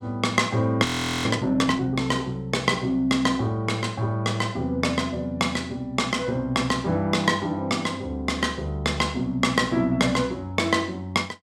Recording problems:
audio freezing; at 1 s

